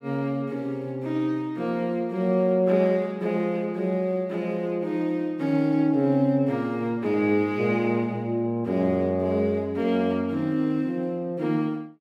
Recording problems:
none

